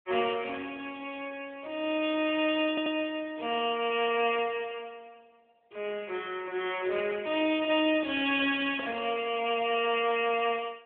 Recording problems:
phone line; 340 Hz to 3.6 kHz, AMR-NB
stutter; at 2.5 s

